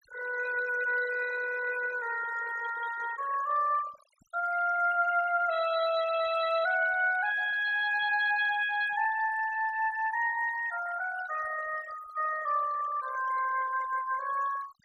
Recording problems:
denoising artefacts; signal-to-artefact ratio 15 dB

